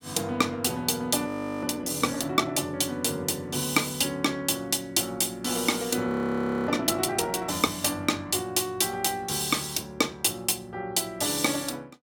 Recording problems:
audio freezing; at 1.5 s and at 6 s for 0.5 s

